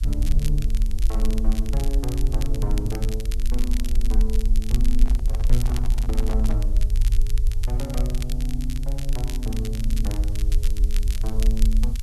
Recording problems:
hiss; slope +3 dB per octave, SNR 22 dB
low-frequency rumble; below 44 Hz, SNR -6 dB
crackling; vinyl, SNR 9 dB
microphone handling noise; from 5 to 6.5 s; peak -1 dB vs average level

